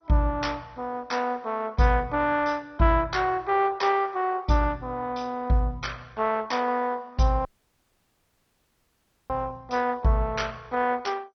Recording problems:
lossy codec; MP2, log-spectral distance 3 dB, nothing above 6 kHz
dropout; at 7.5 s for 2 s

